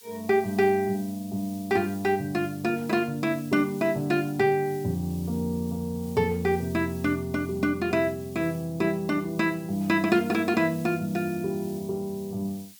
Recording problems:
background hiss; slope +5 dB per octave, SNR 21 dB

